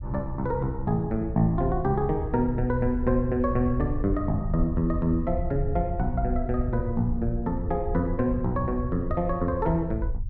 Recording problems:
rumble; below 74 Hz, SNR 7 dB

